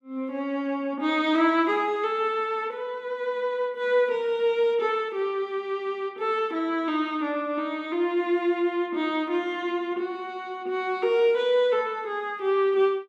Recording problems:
none

